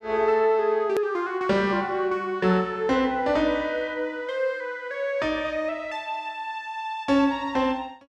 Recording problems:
edit click; at 1 s

